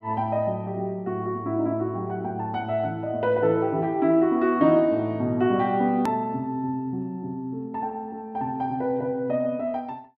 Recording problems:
click at an edit; at 6 s

